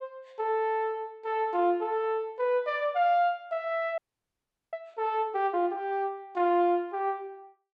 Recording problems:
frozen audio; at 4 s for 1 s

